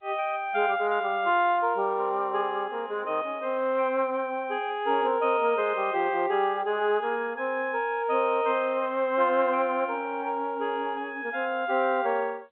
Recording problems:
phone line; 300 Hz to 3.7 kHz, G.711

